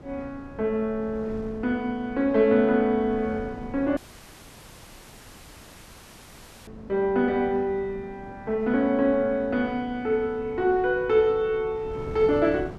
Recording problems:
wind noise; below 380 Hz, SNR 18 dB
dropout; at 4 s for 2.5 s

